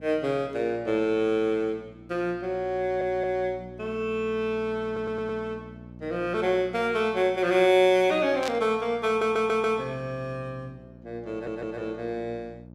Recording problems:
electrical hum; 60 Hz, harmonics up to 900 Hz, SNR 20 dB
stutter; 4 times, first at 3 s
static burst; at 8.5 s; peak -3 dB vs average level

